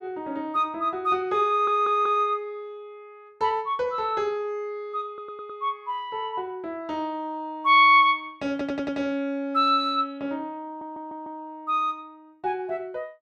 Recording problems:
stutter; 4 times, first at 1.5 s

